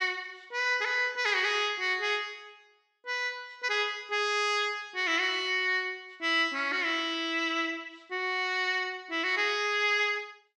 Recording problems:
none

